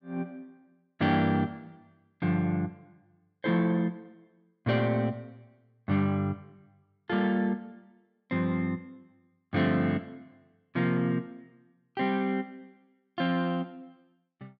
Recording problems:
none

